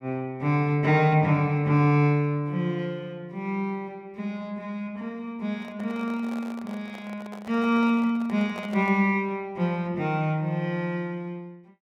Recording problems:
microphone handling noise; from 5.5 to 9 s; peak -10 dB vs average level

